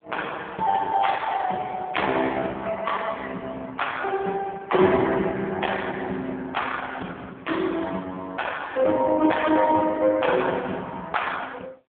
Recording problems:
phone line; 280 Hz to 3.4 kHz, AMR-NB

